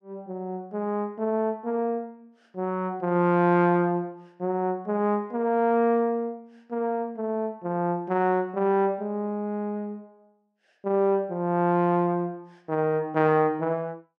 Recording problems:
none

